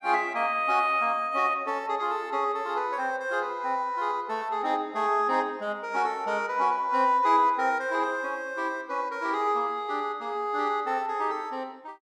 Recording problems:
none

